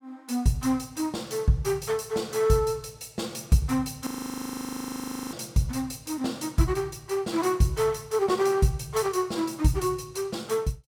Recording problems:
audio freezing; at 4 s for 1.5 s

